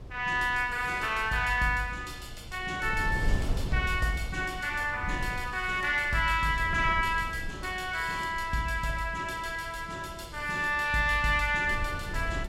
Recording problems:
wind on the microphone; below 100 Hz, SNR 12 dB

